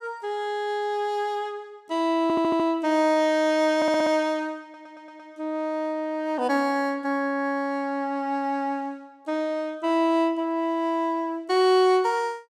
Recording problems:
stutter; at 2 s, at 4 s and at 4.5 s

